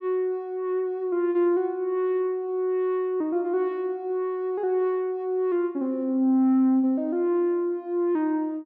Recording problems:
none

